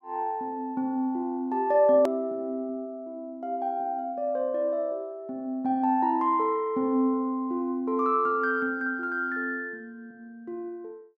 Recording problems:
hard cut with a click; at 2 s

